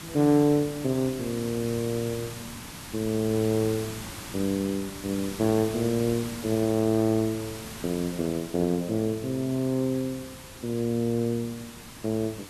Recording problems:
background hiss; SNR 12 dB

